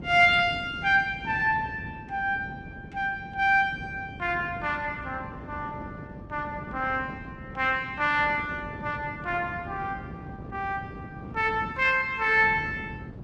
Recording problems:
lossy compression; Opus, log-spectral distance 2 dB
wind on the microphone; below 320 Hz, SNR 15 dB

